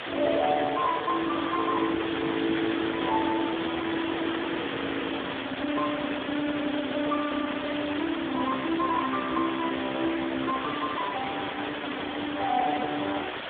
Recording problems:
phone line; 260 Hz to 2 kHz, Speex
background hiss; SNR 5 dB

